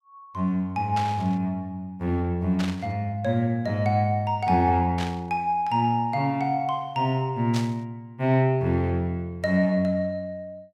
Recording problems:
static burst; 4 times, first at 1 s; peak -4 dB vs average level

